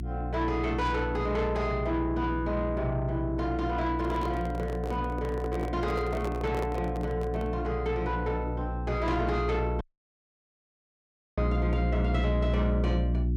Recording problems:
distorted audio; soft clipping, signal-to-distortion ratio 12 dB
electrical hum; 60 Hz, harmonics up to 360 Hz, SNR 2 dB
microphone handling noise; from 4 to 7.5 s; peak -1 dB vs average level
audio cutting out; at 10 s for 1.5 s

